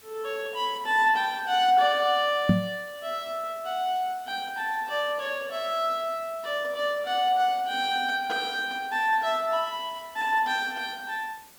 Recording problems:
background hiss; slope -1 dB per octave, SNR 24 dB
knock on the microphone; at 2.5 s; peak +9 dB vs average level

